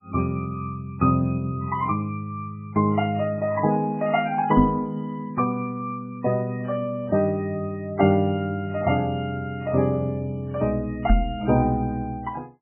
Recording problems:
lossy compression; MP3, log-spectral distance 2 dB, nothing above 2.8 kHz
knock on the microphone; at 4.5 s and at 11 s; peak +8 dB vs average level

